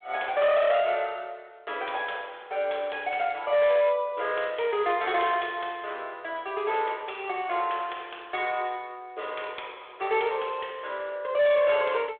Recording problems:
telephone audio; 320 Hz to 3.5 kHz, G.726
distortion; hard clipping, signal-to-distortion ratio 12 dB

